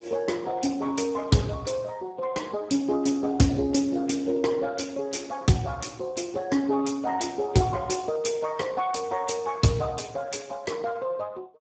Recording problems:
lossy compression; Speex, log-spectral distance 5 dB, nothing above 7.8 kHz

